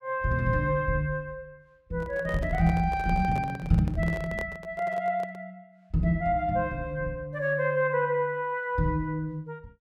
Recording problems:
microphone handling noise; from 2 to 5.5 s; peak -7 dB vs average level

